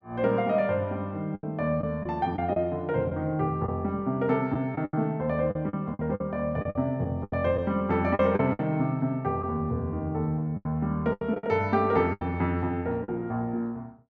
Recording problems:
packet loss; 8% of the sound replaced, filled with the last packet

